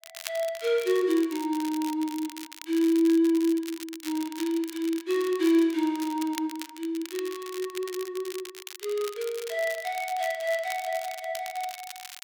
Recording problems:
crackle; vinyl, SNR 14 dB

